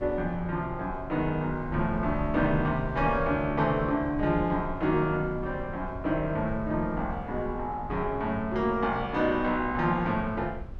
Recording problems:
rumble; below 88 Hz, SNR 13 dB

